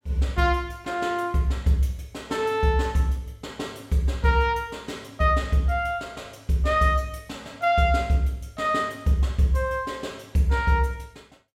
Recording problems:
none

